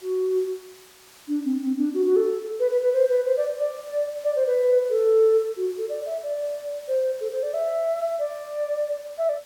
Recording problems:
background hiss; slope 0 dB per octave, SNR 24 dB

